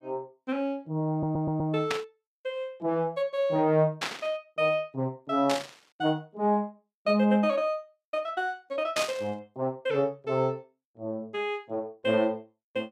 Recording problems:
stutter; at 1 s
burst of static; 4 times, first at 2 s; peak +3 dB vs average level

